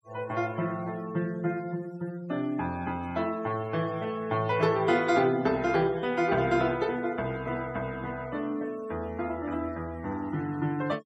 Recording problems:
noise reduction artefacts; signal-to-artefact ratio 22 dB

